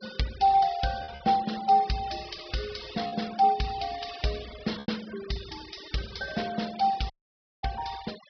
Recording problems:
low-pass filter; nothing above 5.5 kHz
noise reduction artefacts; signal-to-artefact ratio 16 dB
packet loss; 2% of the sound replaced, filled with repeated pitch periods
dropout; at 7 s for 0.5 s

